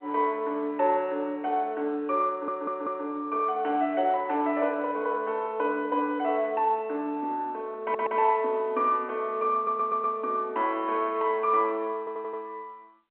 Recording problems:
telephone audio; 300 Hz to 3.6 kHz, G.711
audio stuttering; 4 times, first at 2.5 s

